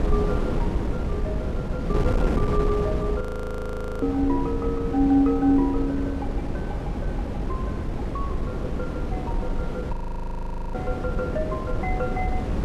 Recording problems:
wind noise; below 270 Hz, SNR 1 dB
audio freezing; at 3 s for 1 s and at 10 s for 1 s

